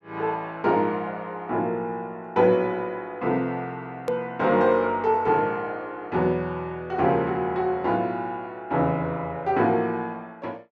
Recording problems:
click at an edit; at 4 s

